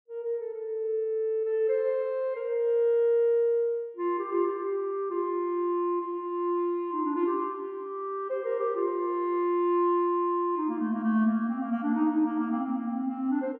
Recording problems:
none

